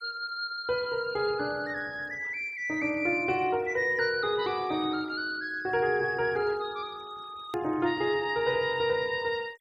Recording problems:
noise reduction artefacts; signal-to-artefact ratio 26 dB
hard cut with a click; at 7.5 s

